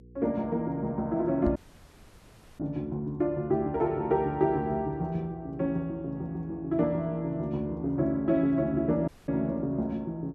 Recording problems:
hum; 60 Hz, harmonics up to 480 Hz, SNR 23 dB
knock on the microphone; at 1.5 s; peak +1 dB vs average level
audio cutting out; at 1.5 s for 1 s and at 9 s

